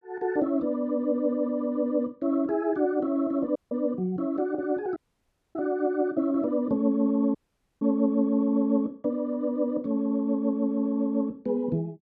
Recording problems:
dropout; at 3.5 s, at 5 s for 0.5 s and at 7.5 s

